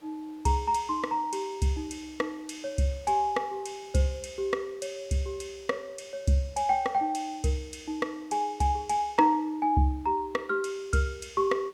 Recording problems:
hiss; slope -4 dB per octave, SNR 29 dB

